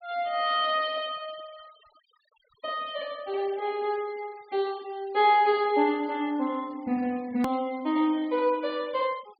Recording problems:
low-pass filter; nothing above 4.8 kHz
denoising artefacts; signal-to-artefact ratio 25 dB
edit click; at 7.5 s

